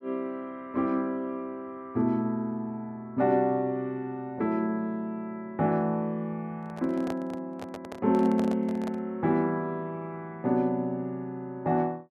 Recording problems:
handling noise; from 6.5 to 9 s; peak -4 dB vs average level

